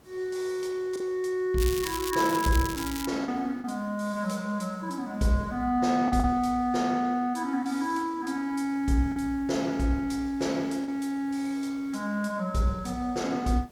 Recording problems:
hiss; slope -6 dB per octave, SNR 28 dB
packet loss; 2% of the sound replaced, filled with the last packet
crackle; from 1.5 to 3 s; loose cable, SNR 8 dB

